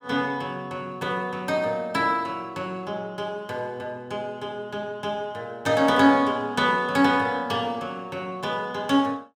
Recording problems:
none

